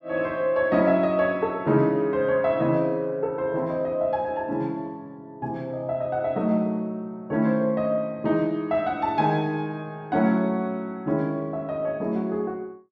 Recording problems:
none

